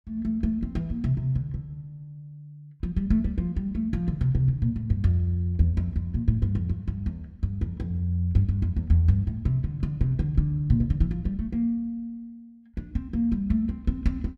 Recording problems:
none

